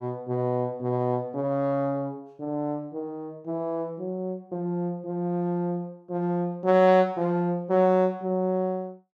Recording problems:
none

